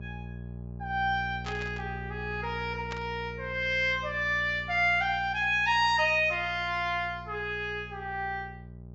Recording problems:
treble cut off; nothing above 8 kHz
mains hum; 60 Hz, harmonics up to 780 Hz, SNR 14 dB
static burst; at 1.5 s and at 3 s; peak -7 dB vs average level

